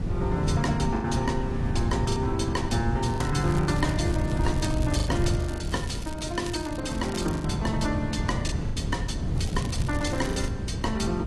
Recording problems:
lossy codec; AAC, log-spectral distance 3 dB, nothing above 11.3 kHz
wind noise; below 160 Hz, SNR 1 dB
lost packets; 6% of the sound replaced, filled with the last packet
crackling; from 3 to 7.5 s and from 9.5 to 10 s; loose cable, SNR 14 dB

